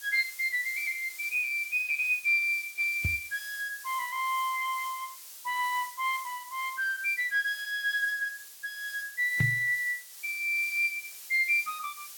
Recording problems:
lossy codec; Speex, then AAC, log-spectral distance 2 dB
hiss; slope +3 dB per octave, SNR 15 dB
microphone thump; at 3 s and at 9.5 s; peak +4 dB vs average level

